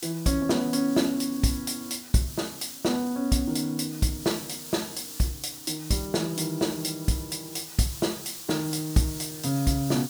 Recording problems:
background hiss; SNR 11 dB

